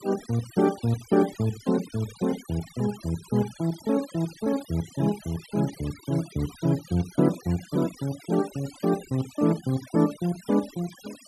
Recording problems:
denoising artefacts; signal-to-artefact ratio 18 dB

